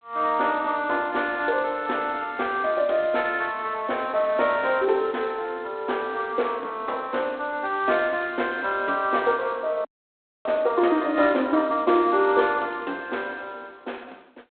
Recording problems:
phone line; 240 Hz to 3.8 kHz, G.726
frozen audio; at 10 s for 0.5 s

